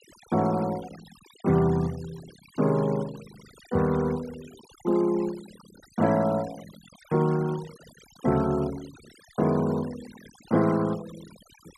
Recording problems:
denoising artefacts; signal-to-artefact ratio 20 dB

